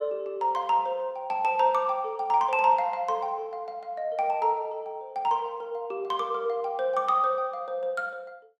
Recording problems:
none

